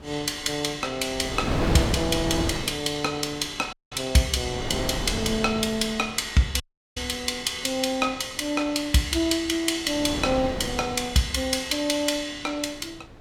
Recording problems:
wind noise; below 630 Hz, SNR 6 dB
audio cutting out; at 3.5 s and at 6.5 s

